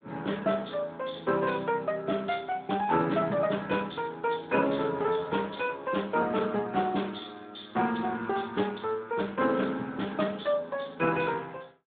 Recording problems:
phone line; 150 Hz to 3.7 kHz, Speex

